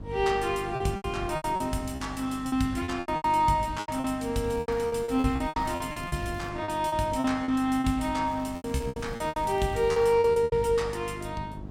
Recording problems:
mains hum; 50 Hz, harmonics up to 700 Hz, SNR 15 dB
wind on the microphone; below 270 Hz, SNR 18 dB
packet loss; 16% of the sound replaced, filled with repeated pitch periods
crackling; from 4.5 to 6.5 s and from 8.5 to 10 s; loose cable, SNR 27 dB

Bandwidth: 16.5 kHz